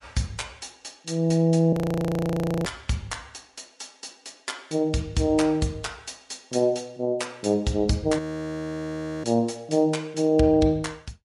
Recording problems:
codec artefacts; MP3, log-spectral distance 3 dB
audio freezing; at 1.5 s for 1 s and at 8 s for 1 s

